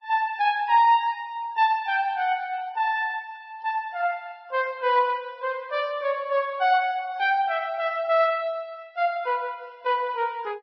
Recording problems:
codec artefacts; Vorbis, log-spectral distance 2 dB, nothing above 4.8 kHz

